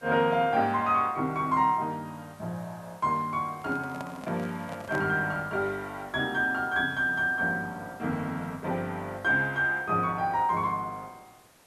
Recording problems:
hiss; slope -3 dB per octave, SNR 27 dB
microphone handling noise; from 3.5 to 5 s; peak -6 dB vs average level

